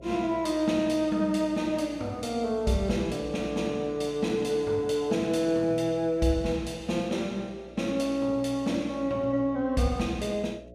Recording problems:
hum; 60 Hz, harmonics up to 660 Hz, SNR 21 dB

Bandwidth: 15.5 kHz